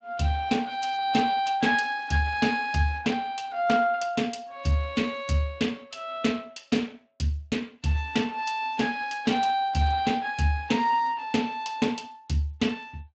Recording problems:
codec artefacts; Speex, log-spectral distance 4 dB, nothing above 7.6 kHz

